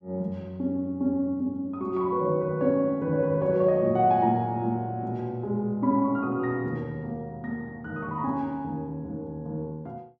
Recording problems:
none

